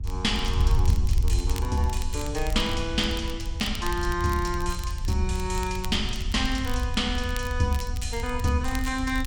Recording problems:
wind on the microphone; below 76 Hz, SNR 2 dB
crackling; vinyl, SNR 16 dB

